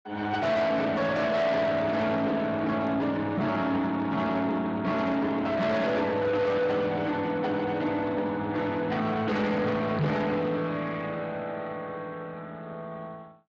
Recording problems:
lossy compression; Speex, log-spectral distance 3 dB
distortion; soft clipping, signal-to-distortion ratio 8 dB
knock on the microphone; at 10 s; peak +5 dB vs average level

